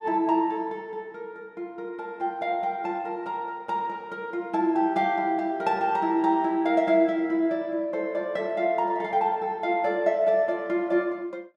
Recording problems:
none

